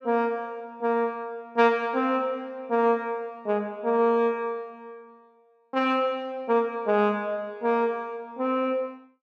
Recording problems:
none

